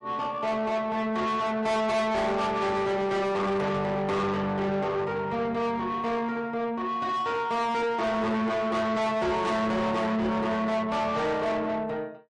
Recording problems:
lossy codec; MP3, log-spectral distance 2 dB, nothing above 10.4 kHz
distorted audio; soft clipping, signal-to-distortion ratio 8 dB

